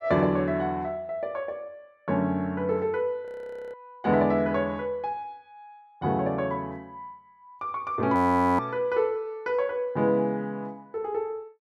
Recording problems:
audio freezing; at 3.5 s and at 8 s

